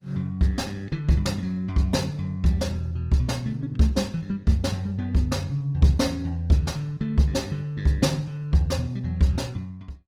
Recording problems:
codec artefacts; Opus, log-spectral distance 2 dB, nothing above 19 kHz

